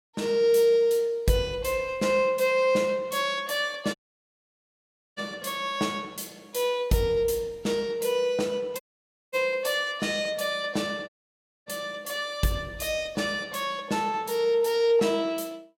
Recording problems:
dropout; at 4 s for 1 s, at 9 s for 0.5 s and at 11 s for 0.5 s

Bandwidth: 16.5 kHz